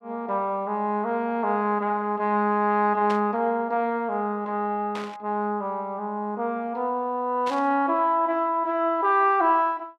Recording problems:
burst of static; at 3 s, at 5 s and at 7.5 s; peak -7 dB vs average level

